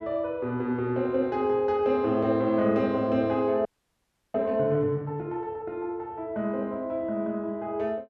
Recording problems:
audio freezing; at 3.5 s for 0.5 s

